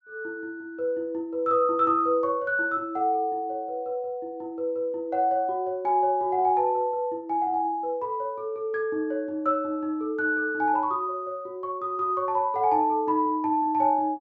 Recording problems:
treble cut off; nothing above 8 kHz

